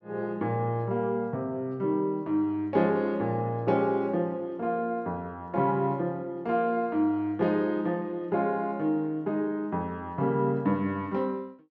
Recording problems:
none

